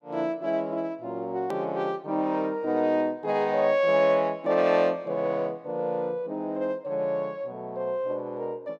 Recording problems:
hard cut with a click; at 1.5 s

